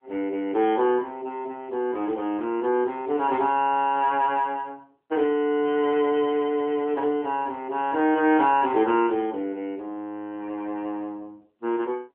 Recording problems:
phone line; 260 Hz to 3.2 kHz, AMR-NB

